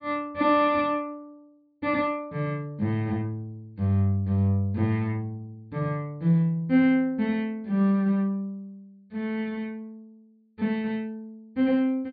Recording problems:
treble missing; nothing above 4.9 kHz

